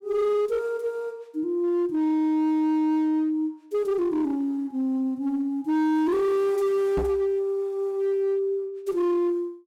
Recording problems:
distortion; hard clipping, uneven, signal-to-distortion ratio 11 dB
knock on the microphone; at 7 s; peak 0 dB vs average level

